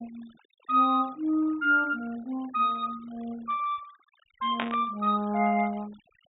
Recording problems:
treble cut off; nothing above 4 kHz
denoising artefacts; signal-to-artefact ratio 26 dB
static burst; at 4.5 s; peak 0 dB vs average level

